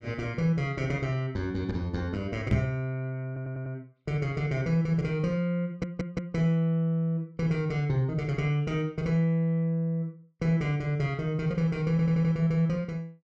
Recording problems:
knock on the microphone; at 2.5 s; peak +6 dB vs average level
stutter; at 3.5 s, at 5.5 s and at 12 s

